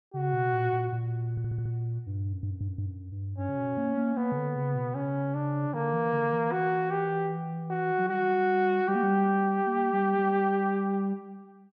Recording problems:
audio stuttering; at 1.5 s and at 2.5 s

